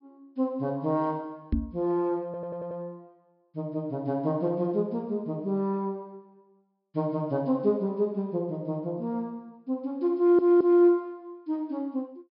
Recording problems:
treble missing; nothing above 5.5 kHz
microphone thump; at 1.5 s; peak +5 dB vs average level
audio stuttering; at 2.5 s and at 10 s

